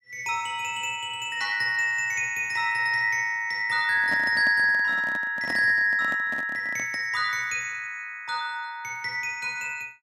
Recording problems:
microphone handling noise; from 4 to 7 s; peak -7 dB vs average level

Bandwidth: 16.5 kHz